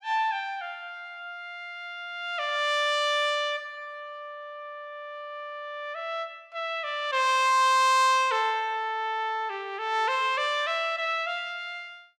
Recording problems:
none

